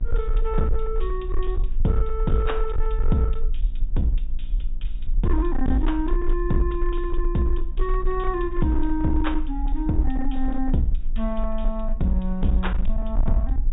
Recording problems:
low-pass filter; nothing above 4 kHz
distortion; hard clipping, uneven, signal-to-distortion ratio 12 dB
hum; 60 Hz, harmonics up to 660 Hz, SNR 20 dB
low-frequency rumble; below 40 Hz, strongest tone 20 Hz, SNR 2 dB

